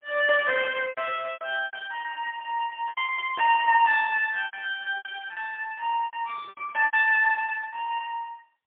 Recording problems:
telephone audio; 430 Hz to 3.5 kHz, AMR-NB, then MP3
packet loss; 12% of the sound replaced, filled with repeated pitch periods

